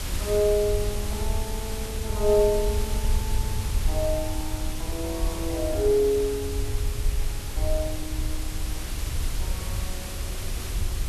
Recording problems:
background hiss; slope -2 dB per octave, SNR 8 dB
rumble; below 74 Hz, SNR 4 dB

